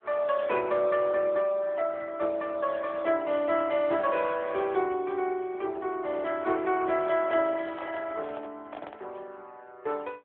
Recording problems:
telephone audio; 240 Hz to 3.4 kHz, AMR-NB
microphone handling noise; from 7 to 9 s; peak -8 dB vs average level

